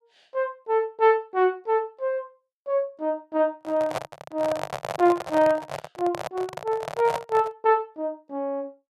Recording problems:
microphone handling noise; from 3.5 to 7.5 s; peak 0 dB vs average level

